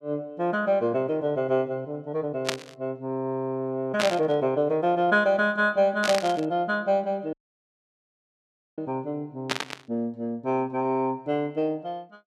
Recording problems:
burst of static; 4 times, first at 2.5 s; peak +4 dB vs average level
dropout; at 7.5 s for 1.5 s

